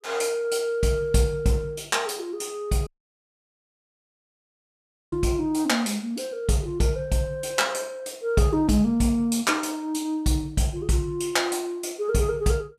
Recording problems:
audio cutting out; at 3 s for 2.5 s

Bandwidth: 14.5 kHz